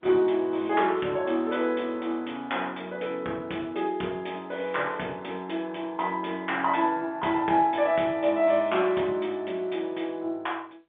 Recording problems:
phone line; 260 Hz to 3.5 kHz, G.711

